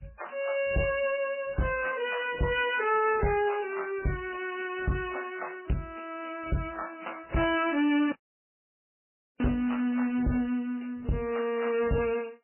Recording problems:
lossy compression; MP3, then MP3, log-spectral distance 5 dB, nothing above 2.6 kHz
distorted audio; soft clipping, signal-to-distortion ratio 6 dB
audio cutting out; at 8 s for 1.5 s

